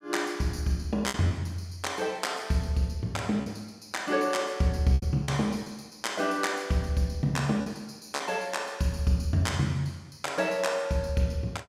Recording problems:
packet loss; 3% of the sound replaced, filled with repeated pitch periods

